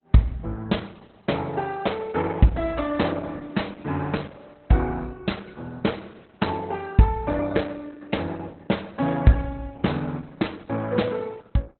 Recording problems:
codec artefacts; Opus, log-spectral distance 4 dB, nothing above 4.1 kHz

